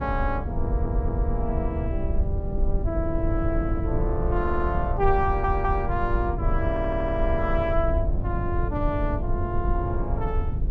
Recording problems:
low-frequency rumble; below 86 Hz, SNR 0 dB
stutter; 4 times, first at 0.5 s

